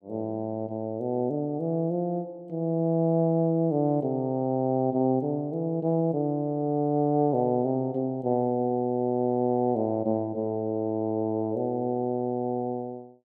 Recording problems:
none

